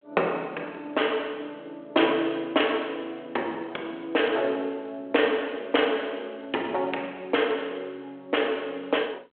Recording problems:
telephone audio; 340 Hz to 3.4 kHz, G.726

